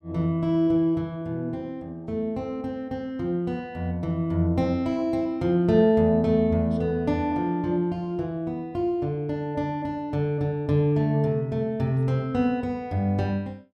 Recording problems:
none

